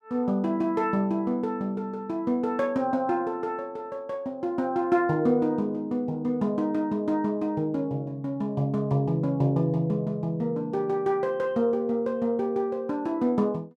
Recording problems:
none

